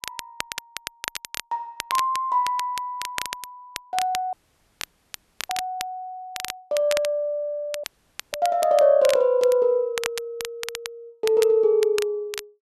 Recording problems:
crackling; vinyl, SNR 11 dB
dropout; at 4.5 s for 1 s and at 8 s

